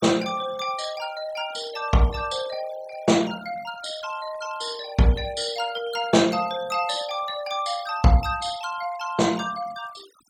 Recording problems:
denoising artefacts; signal-to-artefact ratio 18 dB

